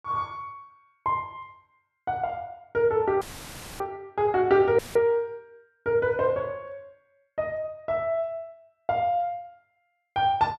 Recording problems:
dropout; at 3 s for 0.5 s and at 5 s; filled with static

